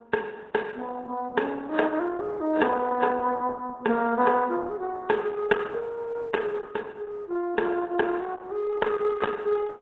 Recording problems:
lossy compression; AAC, then Opus, log-spectral distance 3 dB

